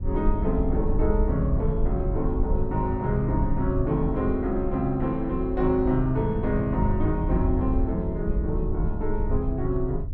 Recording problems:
low-frequency rumble; below 70 Hz, SNR 3 dB

